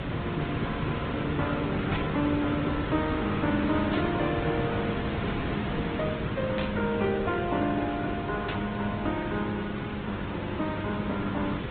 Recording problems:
low-pass filter; nothing above 4 kHz
codec artefacts; Opus, log-spectral distance 5 dB
electrical hum; 50 Hz, harmonics up to 350 Hz, SNR 18 dB
background hiss; SNR 3 dB
static burst; 4 times, first at 2 s; peak -1 dB vs average level

